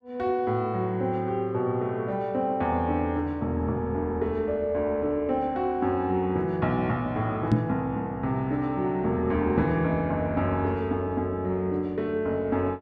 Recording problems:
microphone bump; at 7.5 s; peak +8 dB vs average level

